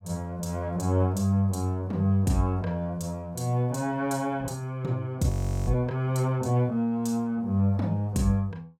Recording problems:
frozen audio; at 5.5 s

